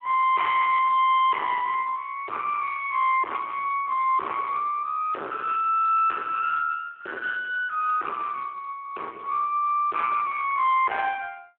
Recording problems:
telephone audio; 340 Hz to 3.1 kHz, Speex
distortion; hard clipping, uneven, signal-to-distortion ratio 6 dB

